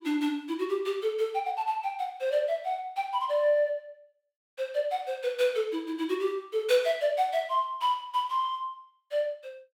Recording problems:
none

